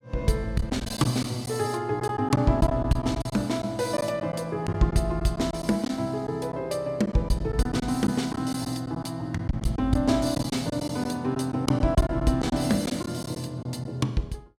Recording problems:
lost packets; 7% of the sound replaced, filled with silence

